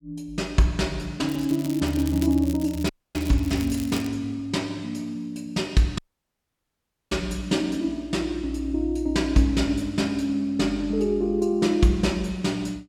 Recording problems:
crackling; from 1.5 to 4 s; loose cable, SNR 17 dB
dropout; at 3 s and at 6 s for 1 s

